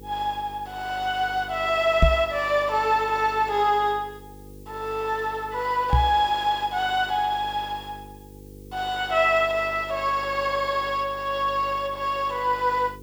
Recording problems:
mains hum; 50 Hz, harmonics up to 500 Hz, SNR 21 dB
hiss; SNR 30 dB
microphone thump; at 2 s and at 6 s; peak +8 dB vs average level

